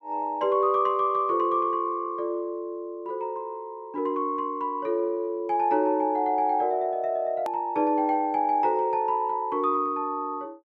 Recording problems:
click at an edit; at 7.5 s

